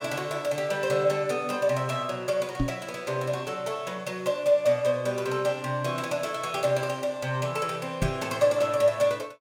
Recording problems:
microphone bump; at 2.5 s and at 8 s; peak +4 dB vs average level

